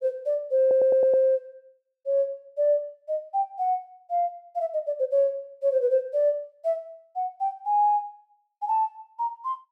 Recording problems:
audio stuttering; at 0.5 s

